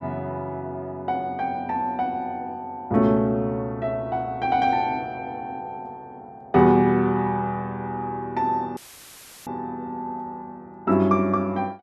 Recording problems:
dropout; at 9 s for 0.5 s; filled with static

